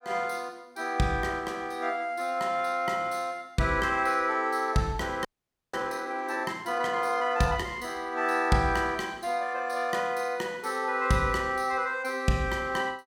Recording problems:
frozen audio; at 5.5 s

